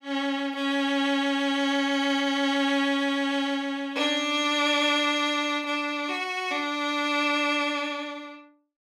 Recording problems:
none

